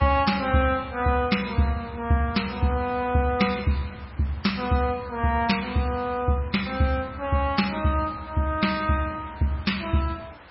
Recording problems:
lossy codec; MP3, log-spectral distance 5 dB, nothing above 5.5 kHz
hiss; SNR 21 dB

